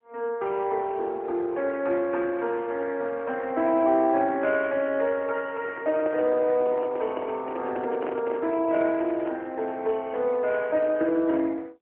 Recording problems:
telephone audio; 260 Hz to 3.2 kHz, AMR-NB
microphone handling noise; from 5.5 to 9.5 s; peak -4 dB vs average level

